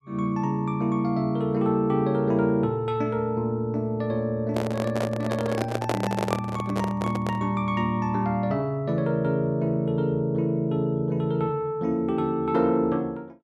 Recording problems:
microphone handling noise; from 4.5 to 7.5 s; peak +3 dB vs average level

